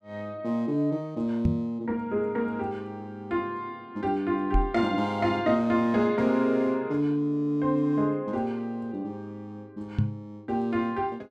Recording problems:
microphone bump; at 1.5 s, at 4.5 s and at 10 s; peak +6 dB vs average level

